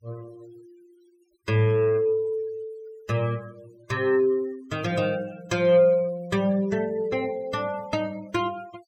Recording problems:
denoising artefacts; signal-to-artefact ratio 23 dB

